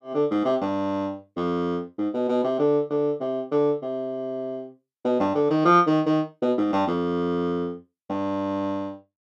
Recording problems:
none

